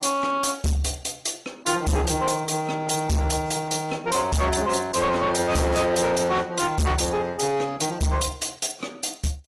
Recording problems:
lossy compression; AAC, log-spectral distance 6 dB, nothing above 11.6 kHz
distorted audio; soft clipping, signal-to-distortion ratio 7 dB

